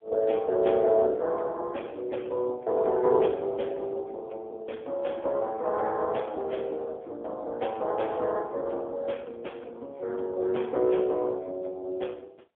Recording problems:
phone line; 320 Hz to 3.4 kHz, AMR-NB, then MP3

